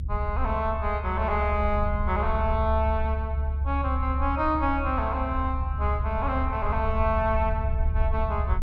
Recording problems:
low-frequency rumble; below 72 Hz, strongest tone 70 Hz, SNR 1 dB

